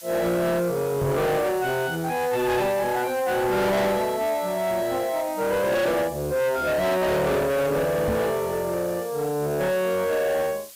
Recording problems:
distorted audio; soft clipping, signal-to-distortion ratio 7 dB
hiss; slope +2 dB per octave, SNR 17 dB
microphone bump; at 1 s and at 8 s; peak +2 dB vs average level

